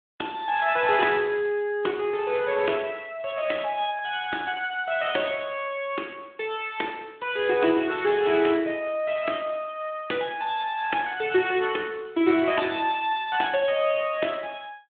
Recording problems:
phone line; 260 Hz to 3.6 kHz, Speex

